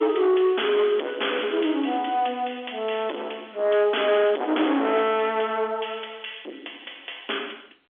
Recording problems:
telephone audio; 260 Hz to 3.5 kHz, G.711
distortion; soft clipping, signal-to-distortion ratio 7 dB

